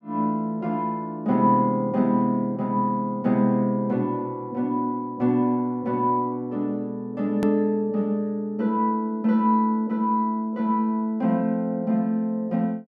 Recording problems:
edit click; at 7.5 s

